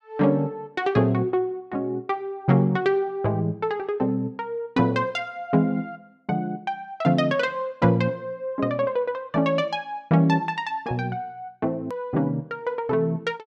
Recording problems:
edit click; at 12 s

